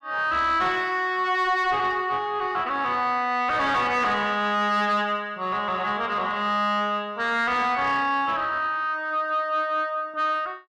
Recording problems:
distorted audio; soft clipping, signal-to-distortion ratio 11 dB

